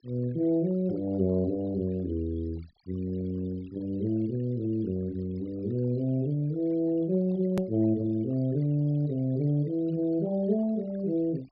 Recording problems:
low-pass filter; nothing above 5.2 kHz
noise reduction artefacts; signal-to-artefact ratio 25 dB
click at an edit; at 7.5 s

